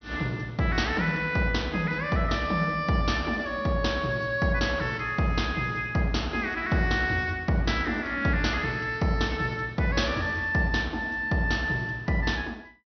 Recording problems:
treble cut off; nothing above 6 kHz

